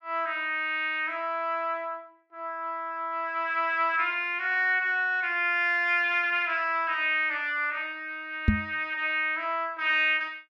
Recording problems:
knock on the microphone; at 8.5 s; peak +8 dB vs average level

